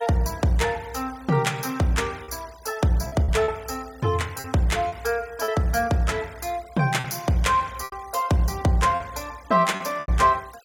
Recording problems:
denoising artefacts; signal-to-artefact ratio 23 dB
packet loss; 5% of the sound replaced, filled with repeated pitch periods

